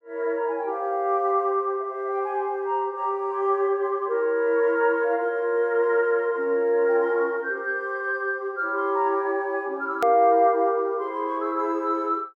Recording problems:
edit click; at 10 s

